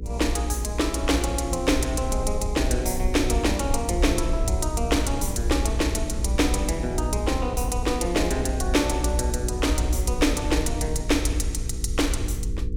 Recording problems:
hum; 60 Hz, harmonics up to 480 Hz, SNR 10 dB
rumble; below 64 Hz, SNR 4 dB

